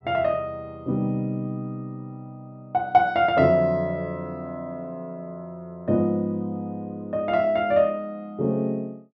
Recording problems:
none

